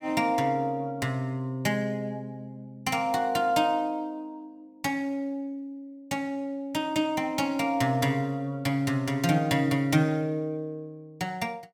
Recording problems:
none

